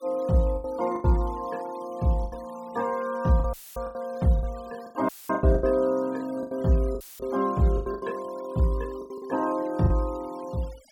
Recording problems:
denoising artefacts; signal-to-artefact ratio 24 dB
lost packets; 11% of the sound replaced, filled with the last packet
audio cutting out; at 3.5 s, at 5 s and at 7 s; filled with static

